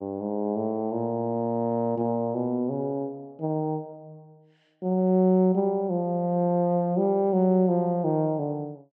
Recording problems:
none

